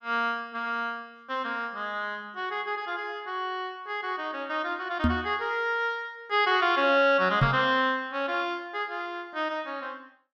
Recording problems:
microphone bump; at 5 s and at 7.5 s; peak +7 dB vs average level

